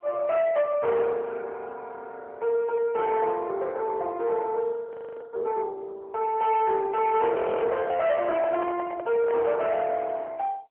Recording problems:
phone line; 340 Hz to 3.6 kHz, AMR-NB
distorted audio; soft clipping, signal-to-distortion ratio 11 dB
frozen audio; at 5 s and at 7.5 s
microphone handling noise; from 8 to 9.5 s; peak -4 dB vs average level

